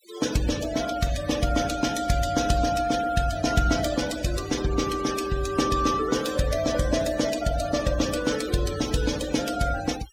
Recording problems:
denoising artefacts; signal-to-artefact ratio 12 dB

